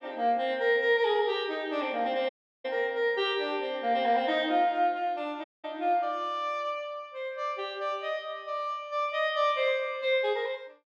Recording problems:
audio cutting out; at 2.5 s and at 5.5 s

